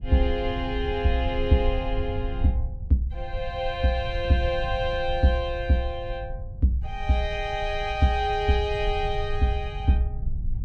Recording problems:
low-frequency rumble; below 76 Hz, SNR 8 dB

